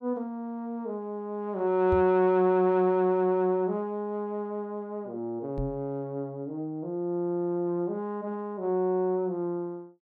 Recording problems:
microphone bump; at 2 s and at 5.5 s; peak 0 dB vs average level

